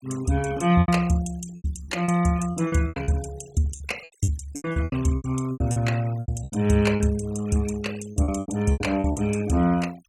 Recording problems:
denoising artefacts; signal-to-artefact ratio 19 dB
lost packets; 16% of the sound replaced, filled with repeated pitch periods

